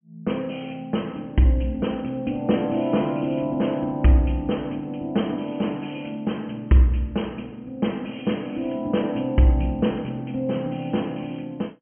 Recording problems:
treble cut off; nothing above 3.2 kHz

